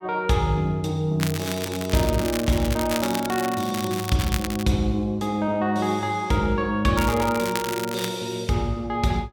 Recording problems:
crackle; from 1 to 4.5 s and from 7 to 8 s; loose cable, SNR 8 dB

